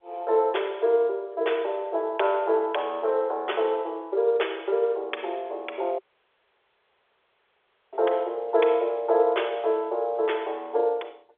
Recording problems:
telephone audio; 340 Hz to 3.6 kHz, G.711
audio cutting out; at 6 s for 2 s

